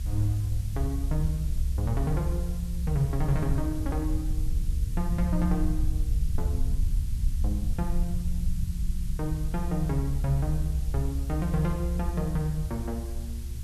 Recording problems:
hiss; slope +2 dB per octave, SNR 17 dB
low-frequency rumble; below 68 Hz, SNR -1 dB

